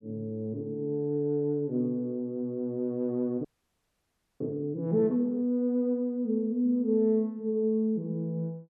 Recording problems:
frozen audio; at 3.5 s for 1 s

